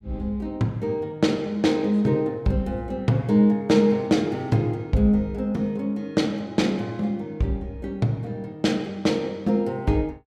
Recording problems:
none

